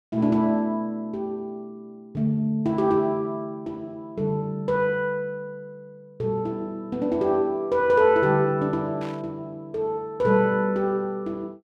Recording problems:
static burst; at 9 s; peak -14 dB vs average level

